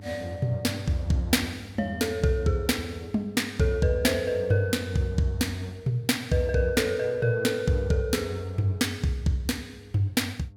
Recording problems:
electrical hum; 50 Hz, harmonics up to 700 Hz, SNR 20 dB

